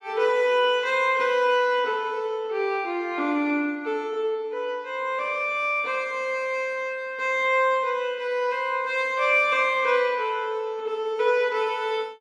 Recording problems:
none

